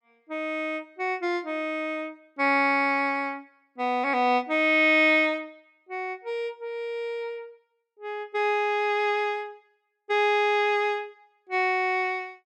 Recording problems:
none

